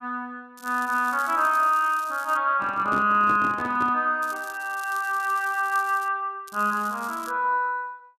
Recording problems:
crackling; from 0.5 to 2.5 s, from 4 to 6 s and at 6.5 s; loose cable, SNR 21 dB
handling noise; from 2.5 to 4 s; peak -5 dB vs average level

